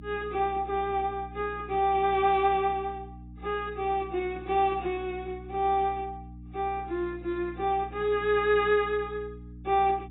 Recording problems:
codec artefacts; AAC, log-spectral distance 2 dB, nothing above 3.8 kHz
mains hum; 60 Hz, harmonics up to 300 Hz, SNR 17 dB

